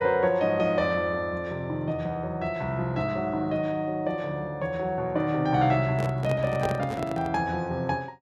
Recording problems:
microphone handling noise; from 6 to 7.5 s; peak 0 dB vs average level

